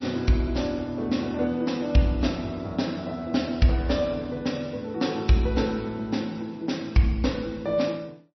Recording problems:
codec artefacts; MP3, log-spectral distance 3 dB, nothing above 5.8 kHz

